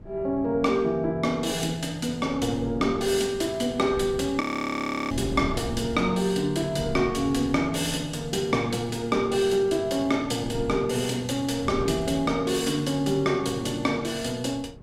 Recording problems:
wind on the microphone; below 250 Hz, SNR 15 dB
audio freezing; at 4.5 s for 0.5 s

